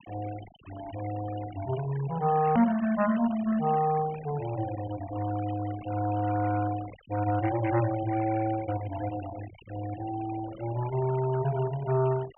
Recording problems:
low-pass filter; nothing above 3.1 kHz
noise reduction artefacts; signal-to-artefact ratio 16 dB
click at an edit; at 2.5 s

